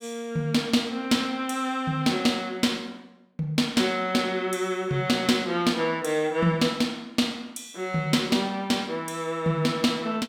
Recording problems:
none

